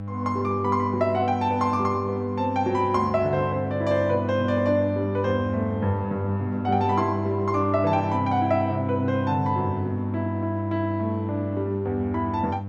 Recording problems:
electrical hum; 50 Hz, harmonics up to 800 Hz, SNR 6 dB

